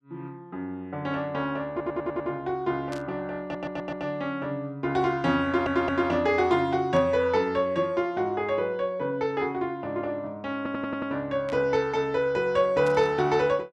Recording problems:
stutter; 4 times, first at 1.5 s
static burst; 4 times, first at 3 s; peak -11 dB vs average level

